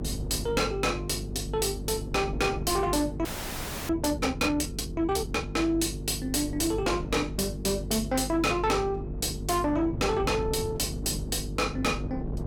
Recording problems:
distortion; soft clipping, signal-to-distortion ratio 8 dB
mains hum; 50 Hz, harmonics up to 450 Hz, SNR 9 dB
wind on the microphone; below 270 Hz, SNR 13 dB
frozen audio; at 3.5 s for 0.5 s

